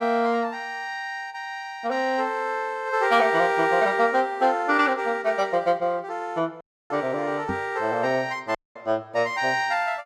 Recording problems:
audio cutting out; at 6.5 s and at 8.5 s
knock on the microphone; at 7.5 s; peak -3 dB vs average level

